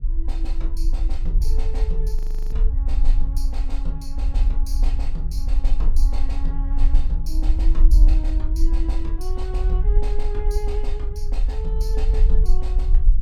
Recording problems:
rumble; below 44 Hz, strongest tone 20 Hz, SNR -13 dB
audio freezing; at 2 s

